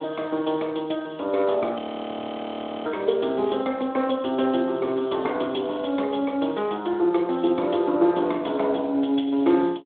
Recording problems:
telephone audio; 240 Hz to 3.6 kHz, Speex
frozen audio; at 2 s for 1 s

